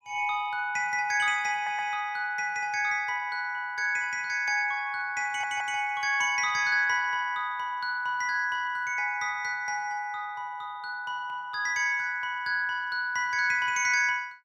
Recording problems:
audio stuttering; at 1.5 s and at 5.5 s

